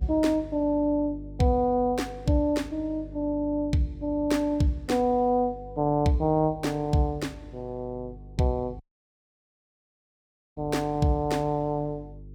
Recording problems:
hum; 50 Hz, harmonics up to 450 Hz, SNR 18 dB
audio cutting out; at 9 s for 2 s

